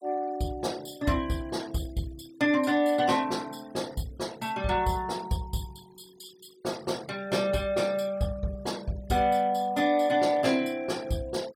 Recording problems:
noise reduction artefacts; signal-to-artefact ratio 21 dB

